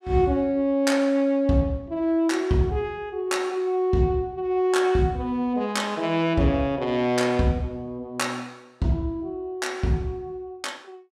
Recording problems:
none

